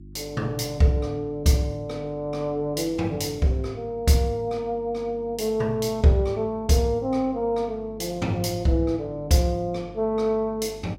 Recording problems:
hum; 50 Hz, harmonics up to 350 Hz, SNR 20 dB

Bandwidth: 16 kHz